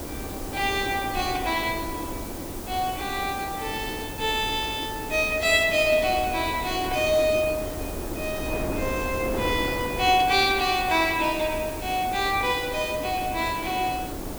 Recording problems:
hiss; SNR 14 dB
wind noise; below 560 Hz, SNR 10 dB

